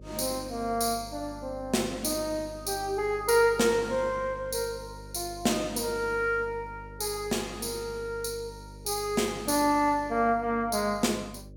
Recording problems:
hum; 50 Hz, harmonics up to 600 Hz, SNR 18 dB

